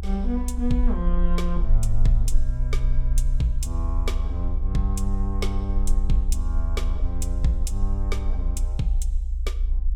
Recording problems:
rumble; below 58 Hz, strongest tone 32 Hz, SNR -2 dB

